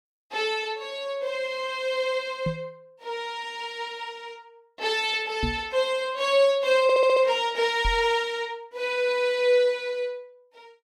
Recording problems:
microphone bump; at 2.5 s, at 5.5 s and at 8 s; peak 0 dB vs average level
audio stuttering; at 7 s

